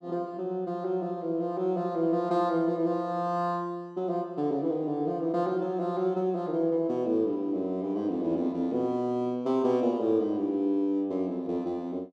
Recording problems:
none

